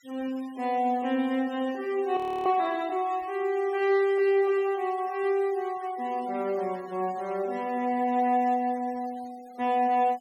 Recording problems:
denoising artefacts; signal-to-artefact ratio 24 dB
audio freezing; at 2 s

